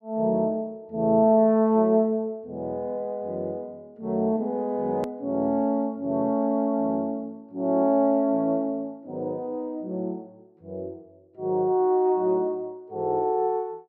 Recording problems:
edit click; at 5 s

